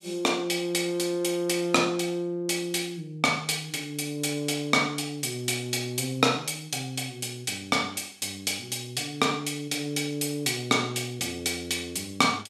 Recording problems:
none

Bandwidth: 14.5 kHz